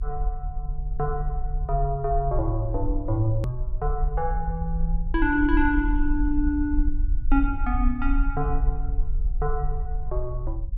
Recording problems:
low-frequency rumble; below 48 Hz, SNR 2 dB
edit click; at 3.5 s

